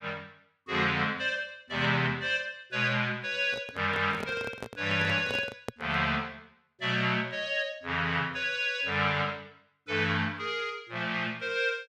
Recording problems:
handling noise; from 3.5 to 6 s; peak -2 dB vs average level

